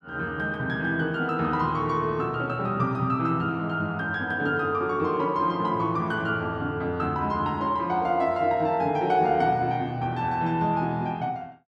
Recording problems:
none

